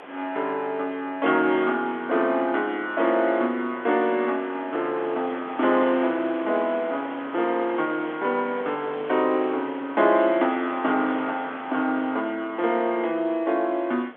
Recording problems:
telephone audio; 240 Hz to 3.5 kHz, G.711
wind on the microphone; below 1.7 kHz, SNR 17 dB

